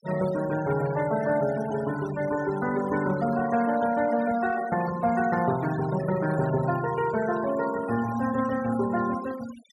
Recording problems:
noise reduction artefacts; signal-to-artefact ratio 14 dB

